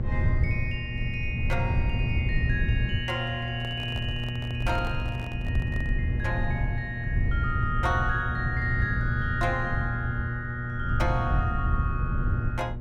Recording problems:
hum; 60 Hz, harmonics up to 840 Hz, SNR 3 dB
low-frequency rumble; below 110 Hz, SNR -1 dB
microphone handling noise; from 3.5 to 6 s; peak -6 dB vs average level

